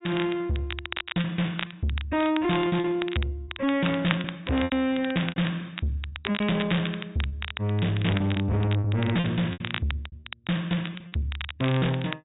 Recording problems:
treble missing; nothing above 4 kHz
distortion; soft clipping, signal-to-distortion ratio 7 dB
crackle; vinyl, SNR 10 dB
packet loss; 9% of the sound replaced, filled with repeated pitch periods

